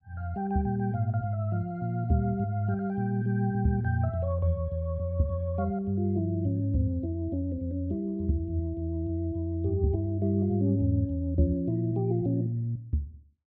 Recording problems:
none

